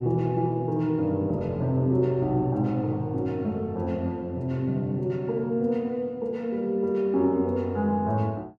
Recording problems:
none

